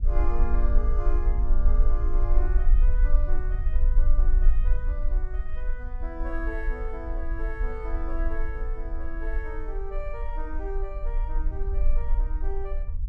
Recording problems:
low-frequency rumble; below 42 Hz, strongest tone 20 Hz, SNR -10 dB

